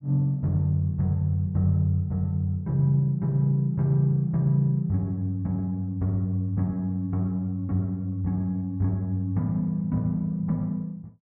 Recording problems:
none

